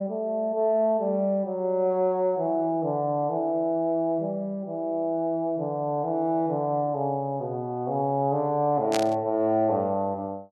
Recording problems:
static burst; at 9 s; peak 0 dB vs average level

